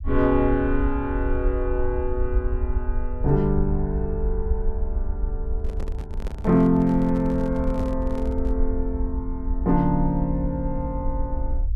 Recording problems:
rumble; below 60 Hz, SNR 5 dB
handling noise; from 5.5 to 8.5 s; peak -8 dB vs average level

